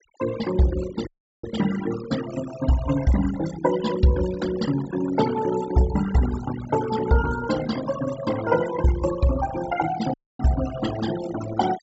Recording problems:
low-pass filter; nothing above 8 kHz
noise reduction artefacts; signal-to-artefact ratio 11 dB
dropout; at 1 s and at 10 s

